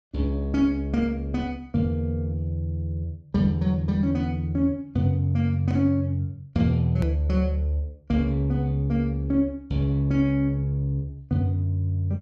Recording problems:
hard cut with a click; at 7 s

